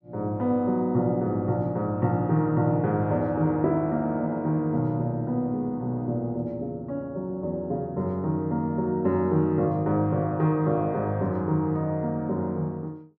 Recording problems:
none

